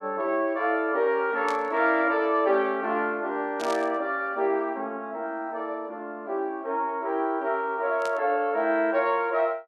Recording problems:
burst of static; at 1.5 s, at 3.5 s and at 8 s; peak -8 dB vs average level

